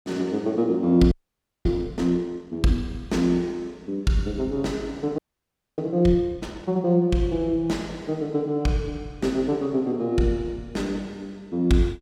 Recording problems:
audio freezing; at 1 s for 0.5 s and at 5 s for 0.5 s

